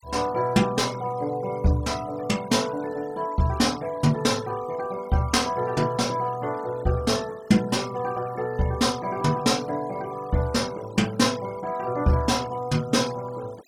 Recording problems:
noise reduction artefacts; signal-to-artefact ratio 20 dB

